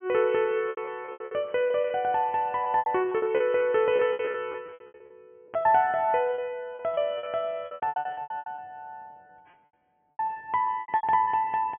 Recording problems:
treble cut off; nothing above 3.3 kHz
lost packets; 19% of the sound replaced, filled with repeated pitch periods

